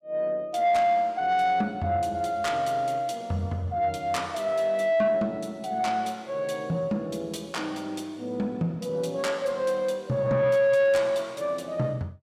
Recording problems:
distortion; soft clipping, signal-to-distortion ratio 11 dB

